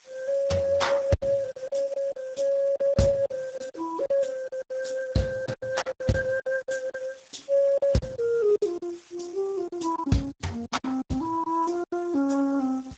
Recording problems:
lossy compression; Speex, then Opus, log-spectral distance 5 dB, nothing above 7.8 kHz
hiss; slope +3 dB per octave, SNR 28 dB
lost packets; 13% of the sound replaced, filled with silence

